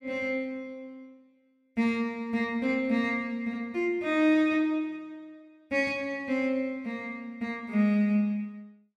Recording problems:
none

